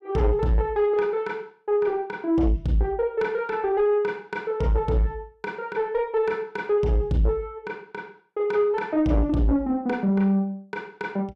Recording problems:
distorted audio; soft clipping, signal-to-distortion ratio 11 dB

